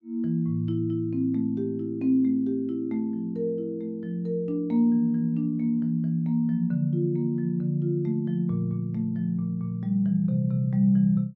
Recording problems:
none

